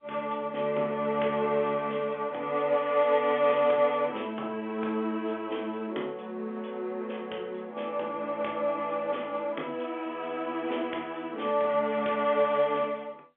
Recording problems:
telephone audio; 280 Hz to 3.5 kHz, G.711

